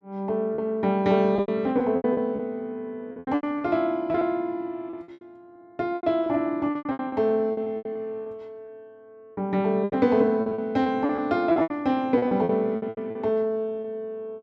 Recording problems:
packet loss; 15% of the sound replaced, filled with repeated pitch periods

